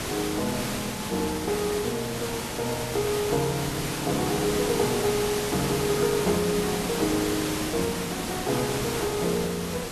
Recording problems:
hiss; slope -3 dB per octave, SNR 2 dB

